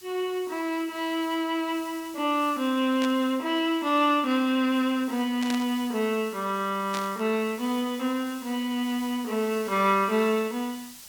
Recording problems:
hiss; SNR 19 dB
burst of static; at 3 s, at 5.5 s and at 7 s; peak -3 dB vs average level

